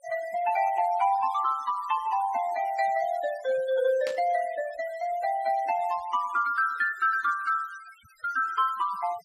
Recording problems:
noise reduction artefacts; signal-to-artefact ratio 20 dB
static burst; at 4 s; peak -7 dB vs average level

